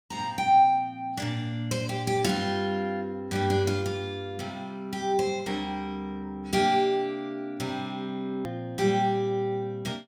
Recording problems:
click at an edit; at 8.5 s

